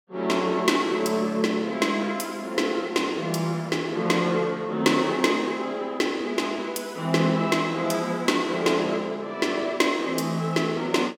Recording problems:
none

